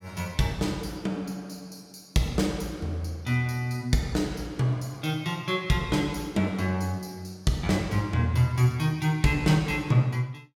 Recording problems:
none

